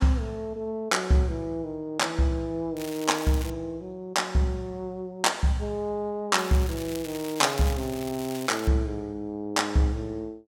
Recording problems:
crackle; at 3 s and from 6.5 to 8.5 s; loose cable, SNR 13 dB

